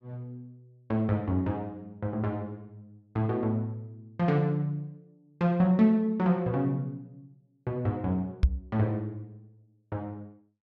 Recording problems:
knock on the microphone; at 8.5 s; peak +10 dB vs average level

